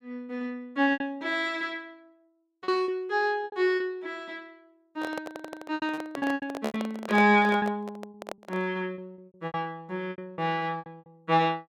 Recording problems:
lost packets; 12% of the sound replaced, filled with repeated pitch periods
microphone handling noise; from 5 to 8.5 s; peak -1 dB vs average level
stutter; at 5.5 s

